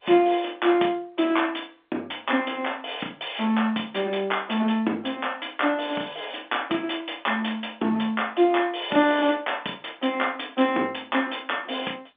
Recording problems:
telephone audio; 190 Hz to 3.6 kHz, G.711

